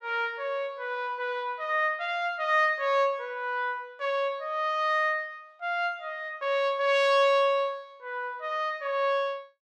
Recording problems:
none

